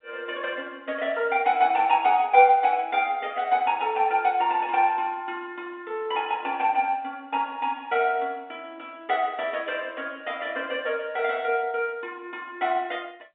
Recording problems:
telephone audio; 280 Hz to 3.7 kHz, G.711

